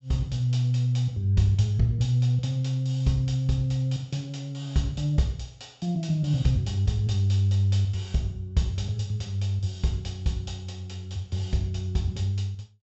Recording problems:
low-pass filter; nothing above 7.8 kHz

